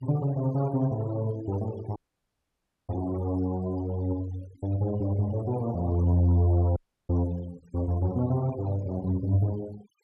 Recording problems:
noise reduction artefacts; signal-to-artefact ratio 21 dB
audio cutting out; at 2 s for 1 s and at 7 s

